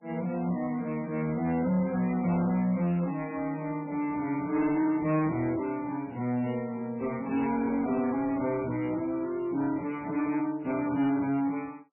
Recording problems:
codec artefacts; MP3, log-spectral distance 2 dB, nothing above 2.4 kHz
distortion; soft clipping, signal-to-distortion ratio 11 dB

